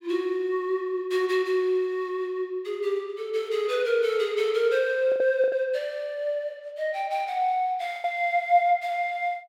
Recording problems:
packet loss; 3% of the sound replaced, filled with the last packet

